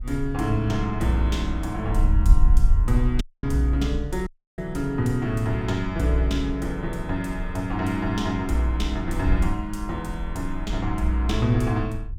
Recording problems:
wind on the microphone; below 56 Hz, SNR 4 dB
dropout; at 3 s and at 4.5 s

